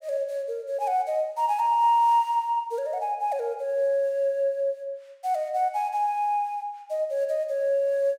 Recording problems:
none

